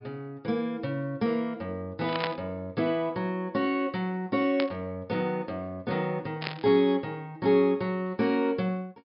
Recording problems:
treble missing; nothing above 5.5 kHz
burst of static; at 2 s, at 4.5 s and at 6.5 s; peak +1 dB vs average level

